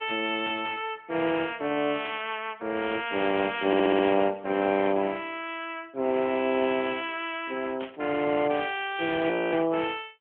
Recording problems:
phone line; 220 Hz to 3.3 kHz, AMR-NB
burst of static; at 2 s, at 5 s and at 8 s; peak -10 dB vs average level
audio stuttering; at 3.5 s
audio freezing; at 9.5 s

